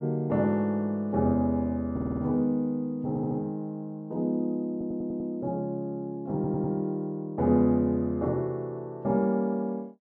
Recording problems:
stutter; 4 times, first at 2 s

